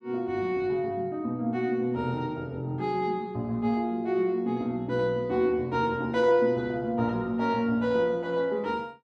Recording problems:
none

